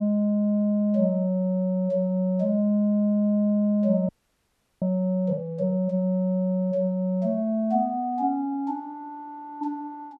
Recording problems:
frozen audio; at 4 s for 0.5 s

